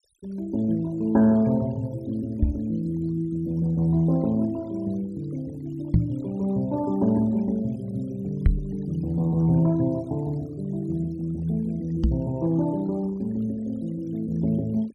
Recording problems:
noise reduction artefacts; signal-to-artefact ratio 27 dB
microphone thump; 4 times, first at 2.5 s; peak +9 dB vs average level

